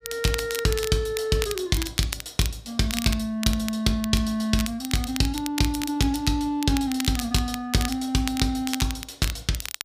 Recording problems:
crackle; vinyl, SNR 9 dB

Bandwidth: 15 kHz